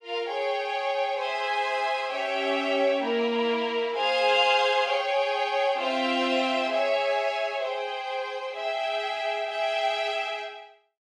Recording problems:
none

